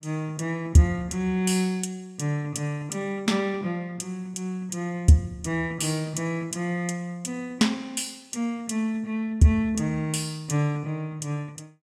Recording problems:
none

